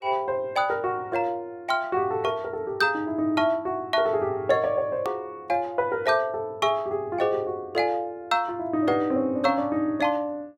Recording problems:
edit click; at 5 s

